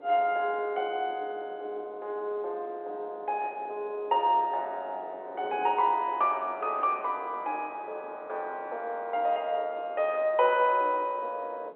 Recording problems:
telephone audio; 320 Hz to 3.4 kHz, G.711
wind on the microphone; below 640 Hz, SNR 20 dB

